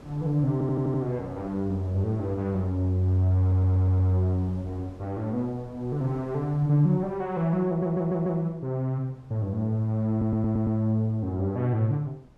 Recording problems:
wind noise; below 440 Hz, SNR 23 dB
stutter; 4 times, first at 0.5 s

